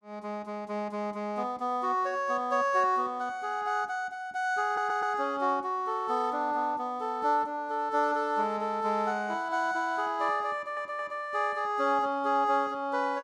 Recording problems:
stutter; at 4.5 s and at 11 s

